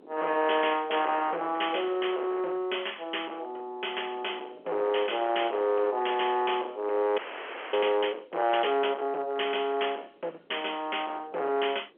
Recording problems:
phone line; 320 Hz to 3.3 kHz, G.711
distortion; hard clipping, uneven, signal-to-distortion ratio 11 dB
wind noise; below 1.4 kHz, SNR 23 dB
audio freezing; at 7 s for 0.5 s

